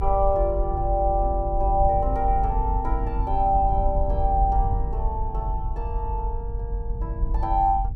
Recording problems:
rumble; below 60 Hz, strongest tone 46 Hz, SNR 3 dB

